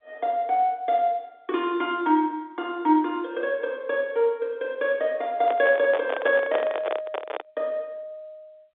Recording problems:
phone line; 260 Hz to 3.7 kHz, G.711
handling noise; from 5.5 to 7.5 s; peak +3 dB vs average level

